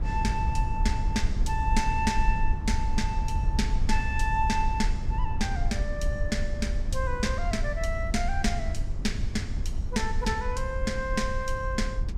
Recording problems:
low-frequency rumble; below 68 Hz, SNR 0 dB

